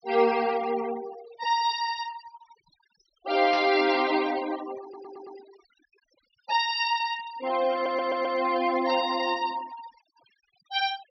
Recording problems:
treble missing; nothing above 5.9 kHz
denoising artefacts; signal-to-artefact ratio 16 dB
static burst; at 3.5 s; peak -6 dB vs average level
audio stuttering; at 5 s and at 7.5 s

